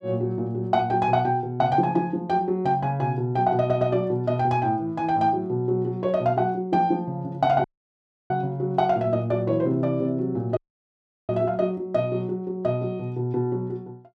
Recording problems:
audio stuttering; at 3.5 s
dropout; at 7.5 s for 0.5 s and at 11 s for 0.5 s

